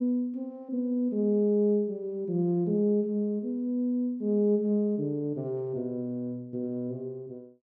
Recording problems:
none

